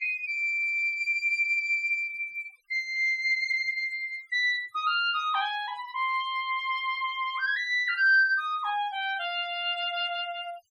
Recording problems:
denoising artefacts; signal-to-artefact ratio 26 dB

